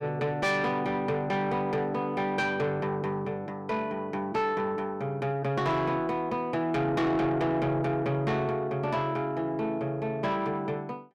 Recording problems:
distorted audio; soft clipping, signal-to-distortion ratio 11 dB

